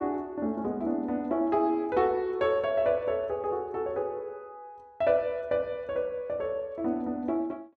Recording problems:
none

